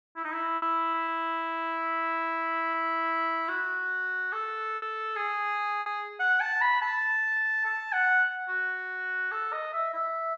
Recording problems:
packet loss; 3% of the sound replaced, filled with repeated pitch periods

